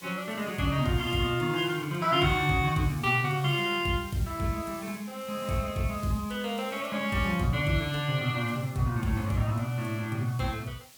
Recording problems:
background hiss; SNR 19 dB

